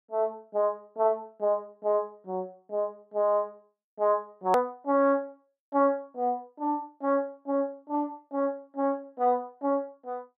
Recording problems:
edit click; at 4.5 s

